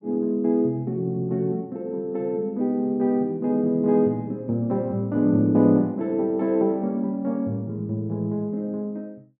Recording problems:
none

